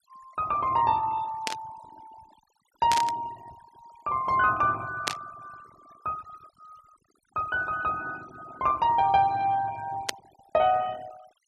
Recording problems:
noise reduction artefacts; signal-to-artefact ratio 23 dB
static burst; 4 times, first at 1.5 s; peak +4 dB vs average level

